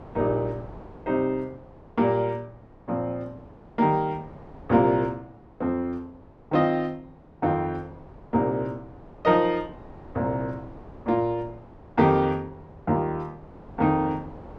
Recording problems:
wind noise; below 630 Hz, SNR 21 dB

